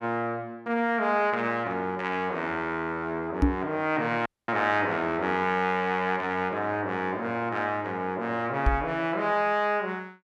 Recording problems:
microphone bump; at 3.5 s and at 8.5 s; peak +8 dB vs average level
audio cutting out; at 4.5 s

